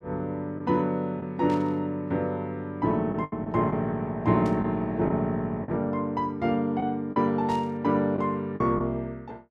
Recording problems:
lost packets; 4% of the sound replaced, filled with the last packet
burst of static; at 1.5 s, at 4.5 s and at 7.5 s; peak -14 dB vs average level

